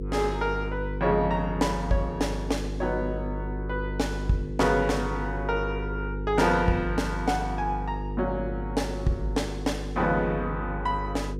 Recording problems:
mains hum; 50 Hz, harmonics up to 500 Hz, SNR 5 dB

